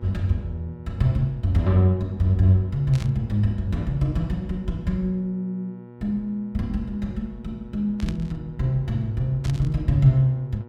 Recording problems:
hum; 60 Hz, harmonics up to 1.8 kHz, SNR 19 dB
static burst; at 3 s, at 8 s and at 9.5 s; peak -11 dB vs average level

